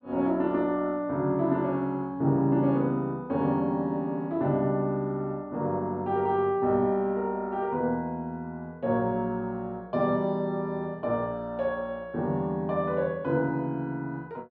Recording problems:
none

